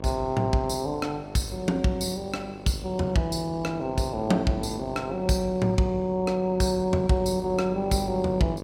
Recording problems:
hum; 50 Hz, harmonics up to 1.3 kHz, SNR 14 dB

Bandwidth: 16.5 kHz